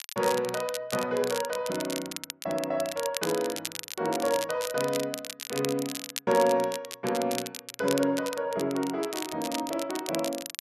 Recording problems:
crackle; vinyl, SNR 8 dB

